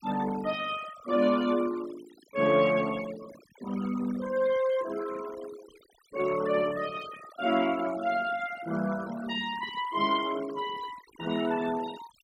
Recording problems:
noise reduction artefacts; signal-to-artefact ratio 16 dB

